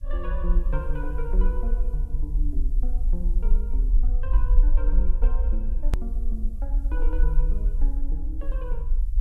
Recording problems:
hiss; slope 0 dB per octave, SNR 29 dB
low-frequency rumble; below 42 Hz, strongest tone 22 Hz, SNR -12 dB
edit click; at 6 s

